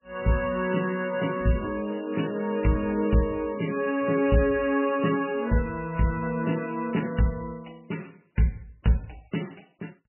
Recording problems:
lossy codec; MP3, log-spectral distance 5 dB, nothing above 2.7 kHz

